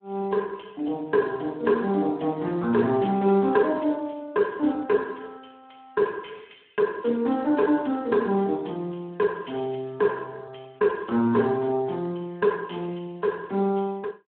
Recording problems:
telephone audio; 150 Hz to 3.5 kHz, Speex

